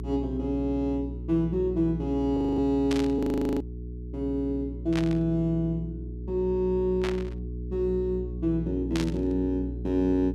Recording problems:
hum; 60 Hz, harmonics up to 420 Hz, SNR 9 dB
audio freezing; at 2.5 s and at 3 s
static burst; 4 times, first at 3 s; peak -3 dB vs average level

